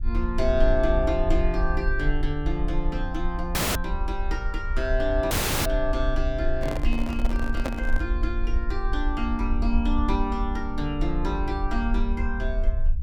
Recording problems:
low-frequency rumble; below 52 Hz, SNR 1 dB
audio cutting out; at 3.5 s and at 5.5 s
handling noise; from 6.5 to 8 s; peak +4 dB vs average level

